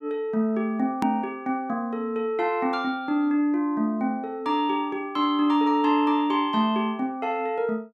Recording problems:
hard cut with a click; at 1 s

